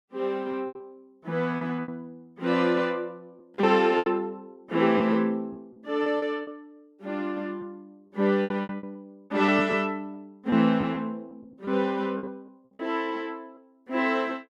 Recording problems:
lost packets; 9% of the sound replaced, filled with repeated pitch periods

